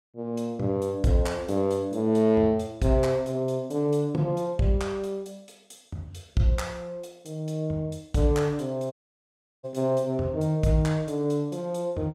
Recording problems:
dropout; at 9 s for 0.5 s

